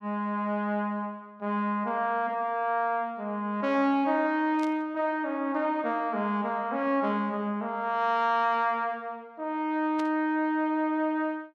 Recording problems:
static burst; at 4.5 s and at 10 s; peak -11 dB vs average level

